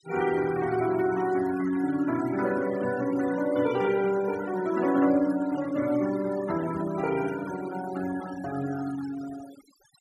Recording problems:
denoising artefacts; signal-to-artefact ratio 15 dB

